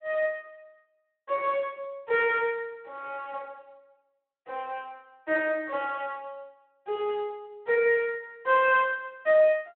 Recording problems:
phone line; 340 Hz to 3.6 kHz, Speex

